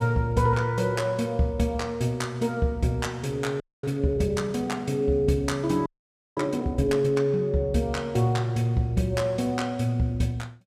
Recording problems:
audio freezing; at 3.5 s and at 6 s for 0.5 s

